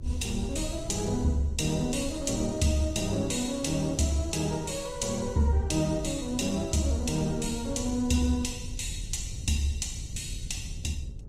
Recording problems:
codec artefacts; Opus, log-spectral distance 4 dB, nothing above 18.9 kHz
mains hum; 50 Hz, harmonics up to 550 Hz, SNR 25 dB
wind noise; below 94 Hz, SNR 11 dB

